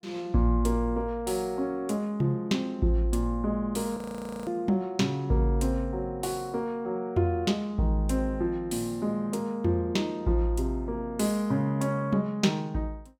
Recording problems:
frozen audio; at 4 s

